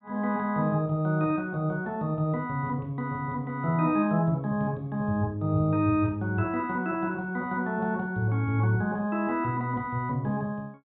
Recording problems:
treble cut off; nothing above 3.9 kHz

